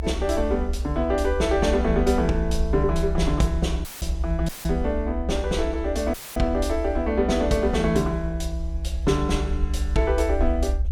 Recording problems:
low-frequency rumble; below 66 Hz, SNR 4 dB
dropout; at 4 s, at 4.5 s and at 6 s; filled with static

